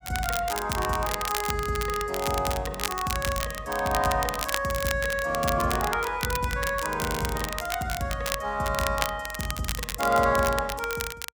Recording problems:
crackle; vinyl, SNR 6 dB

